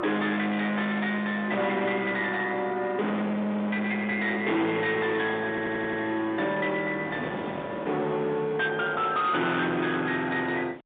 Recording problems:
telephone audio; 170 Hz to 3.8 kHz, G.711
distorted audio; hard clipping, signal-to-distortion ratio 8 dB
wind noise; below 930 Hz, SNR 17 dB
stutter; at 5.5 s

